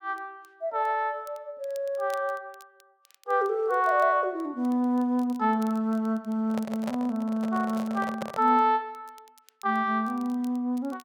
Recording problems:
crackling; vinyl, SNR 29 dB
handling noise; from 6.5 to 8.5 s; peak -3 dB vs average level

